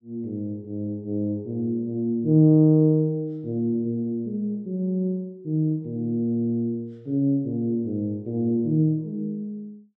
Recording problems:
none

